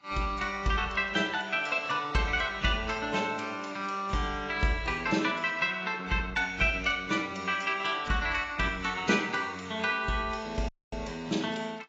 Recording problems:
lossy codec; AAC, log-spectral distance 4 dB, nothing above 7.3 kHz
audio cutting out; at 11 s

